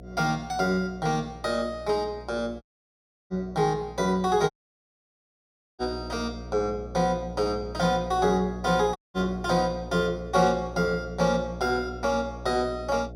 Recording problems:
electrical hum; 60 Hz, harmonics up to 720 Hz, SNR 14 dB
audio cutting out; at 2.5 s for 0.5 s, at 4.5 s for 1.5 s and at 9 s

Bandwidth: 16 kHz